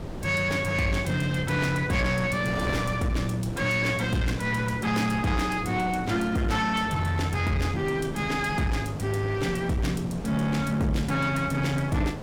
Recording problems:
distorted audio; soft clipping, signal-to-distortion ratio 10 dB
hum; 50 Hz, harmonics up to 2.2 kHz, SNR 26 dB
wind on the microphone; below 510 Hz, SNR 10 dB

